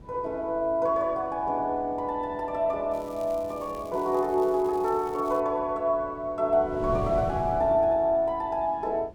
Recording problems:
wind noise; below 320 Hz, SNR 16 dB
crackle; from 3 to 5.5 s; loose cable, SNR 27 dB

